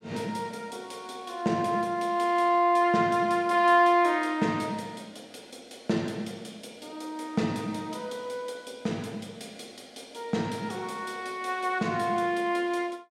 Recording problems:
none

